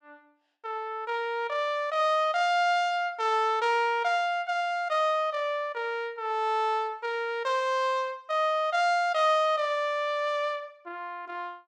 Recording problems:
none

